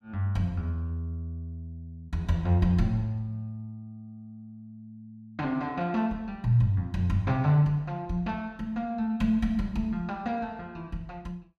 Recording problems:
none

